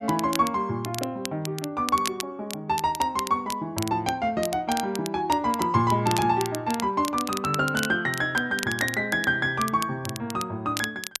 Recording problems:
crackle; vinyl, SNR 10 dB

